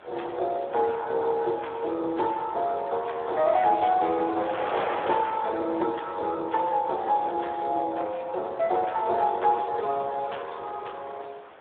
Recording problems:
phone line; 320 Hz to 3.6 kHz, Speex
wind noise; below 1.5 kHz, SNR 14 dB

